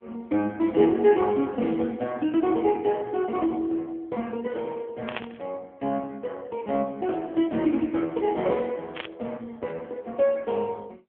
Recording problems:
phone line; 170 Hz to 3.3 kHz, AMR-NB
burst of static; at 5 s and at 9 s; peak -4 dB vs average level

